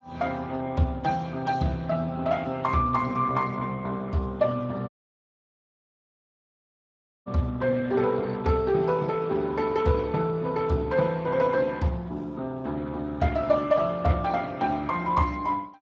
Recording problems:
lossy compression; Speex, log-spectral distance 3 dB
audio cutting out; at 5 s for 2.5 s

